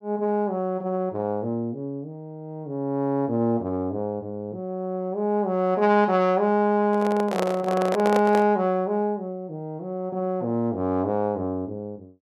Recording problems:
handling noise; from 7 to 8.5 s; peak +2 dB vs average level

